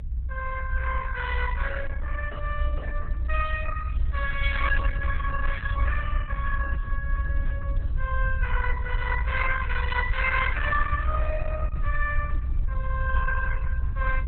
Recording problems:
lossy compression; Opus, log-spectral distance 3 dB, nothing above 3.6 kHz
rumble; below 62 Hz, SNR 0 dB

